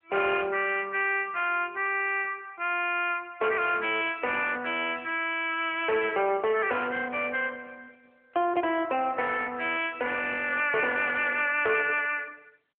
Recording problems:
telephone audio; 300 Hz to 3.3 kHz, AMR-NB
distortion; soft clipping, signal-to-distortion ratio 13 dB

